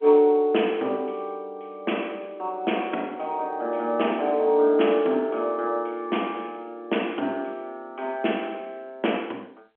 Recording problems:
telephone audio; 240 Hz to 3.4 kHz, G.711

